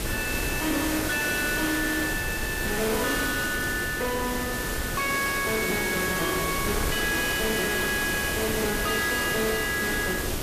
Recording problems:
distorted audio; soft clipping, signal-to-distortion ratio 6 dB
background hiss; slope -4 dB per octave, SNR 3 dB
wind on the microphone; below 550 Hz, SNR 8 dB
crackling; at 1 s; loose cable, SNR 20 dB

